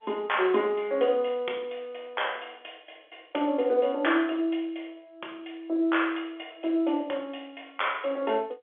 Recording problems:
phone line; 300 Hz to 3.5 kHz, G.711

